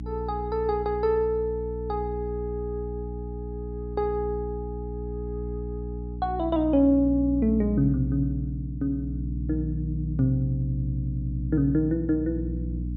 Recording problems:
low-pass filter; nothing above 8 kHz
electrical hum; 60 Hz, harmonics up to 300 Hz, SNR 6 dB

